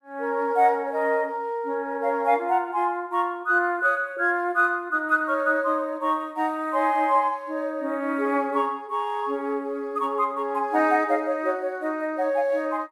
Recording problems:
none

